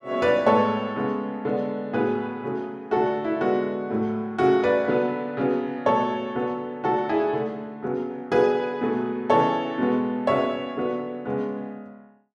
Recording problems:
none

